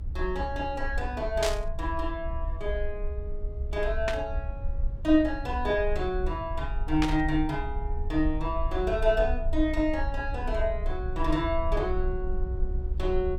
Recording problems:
rumble; below 64 Hz, SNR 5 dB
static burst; at 1.5 s, at 4 s and at 7 s; peak +3 dB vs average level

